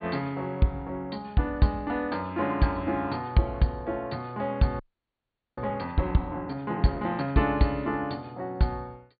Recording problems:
treble cut off; nothing above 4.6 kHz
audio freezing; at 5 s for 1 s

